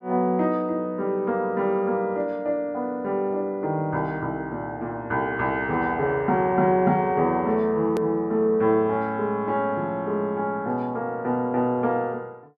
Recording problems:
hard cut with a click; at 8 s

